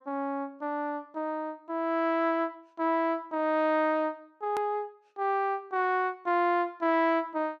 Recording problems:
edit click; at 4.5 s

